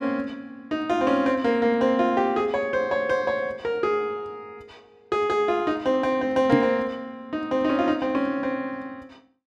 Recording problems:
knock on the microphone; at 6.5 s; peak +7 dB vs average level

